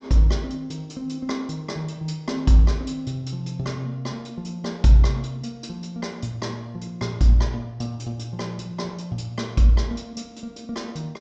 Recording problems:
treble cut off; nothing above 8 kHz

